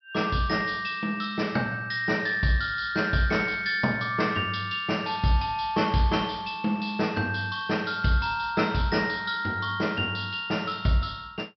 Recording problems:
low-pass filter; nothing above 5.7 kHz

